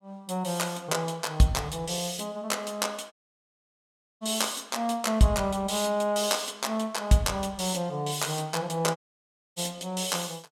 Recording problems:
dropout; at 3 s for 1 s and at 9 s for 0.5 s

